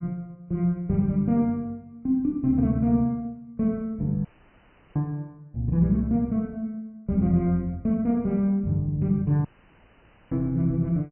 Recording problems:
treble missing; nothing above 3 kHz
audio cutting out; at 4.5 s for 0.5 s and at 9.5 s for 1 s

